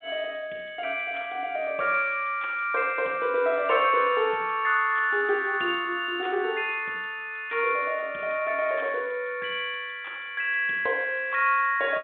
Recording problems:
phone line; 240 Hz to 3.7 kHz, G.726

